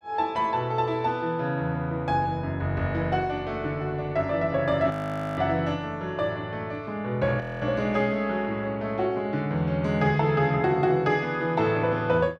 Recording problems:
frozen audio; at 5 s and at 7.5 s

